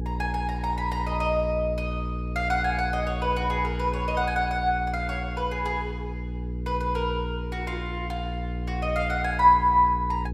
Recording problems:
hum; 60 Hz, harmonics up to 480 Hz, SNR 6 dB

